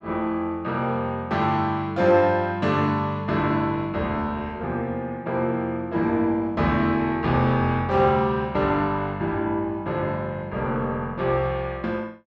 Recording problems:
none

